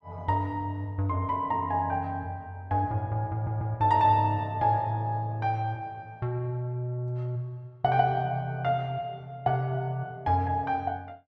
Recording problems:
stutter; at 3.5 s

